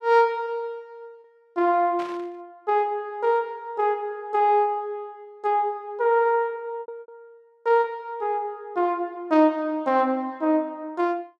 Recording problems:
packet loss; 2% of the sound replaced, filled with repeated pitch periods
burst of static; at 2 s; peak -12 dB vs average level

